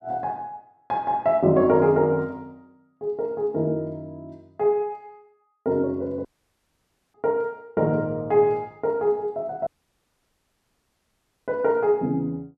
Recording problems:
audio cutting out; at 6.5 s for 1 s and at 9.5 s for 2 s

